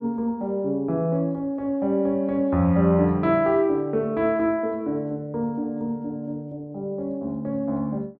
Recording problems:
none

